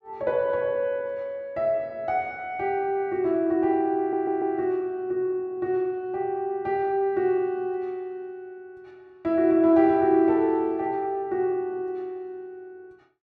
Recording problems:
audio stuttering; at 4 s

